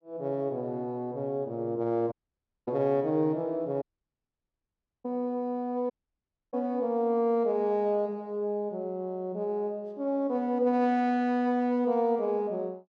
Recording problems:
audio cutting out; at 2 s for 0.5 s, at 4 s for 1 s and at 6 s for 0.5 s

